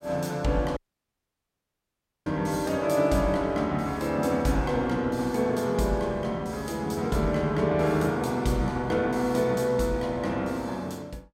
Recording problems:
dropout; at 1 s for 1.5 s

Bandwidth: 16 kHz